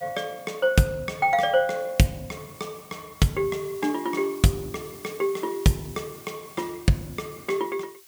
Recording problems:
hiss; slope +2 dB per octave, SNR 20 dB

